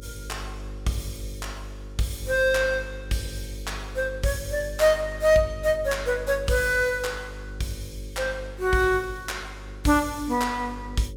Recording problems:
hum; 50 Hz, harmonics up to 550 Hz, SNR 13 dB

